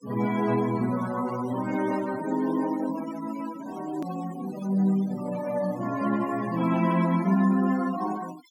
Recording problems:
noise reduction artefacts; signal-to-artefact ratio 17 dB
hard cut with a click; at 4 s

